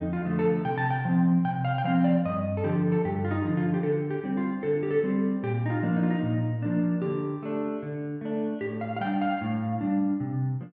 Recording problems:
none

